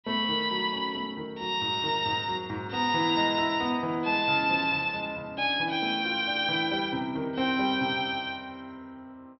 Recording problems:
low-pass filter; nothing above 5.5 kHz

